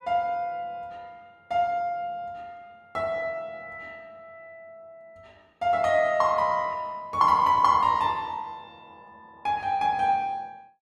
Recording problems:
none

